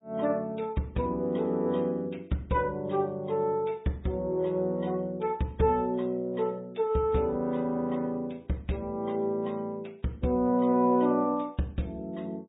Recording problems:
treble cut off; nothing above 3.8 kHz
lossy codec; MP3, log-spectral distance 2 dB

